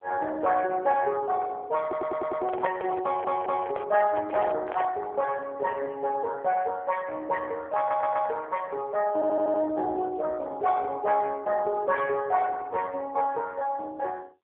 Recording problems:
phone line; 370 Hz to 2.2 kHz, AMR-NB
audio stuttering; 4 times, first at 2 s
handling noise; from 2 to 5 s; peak +1 dB vs average level

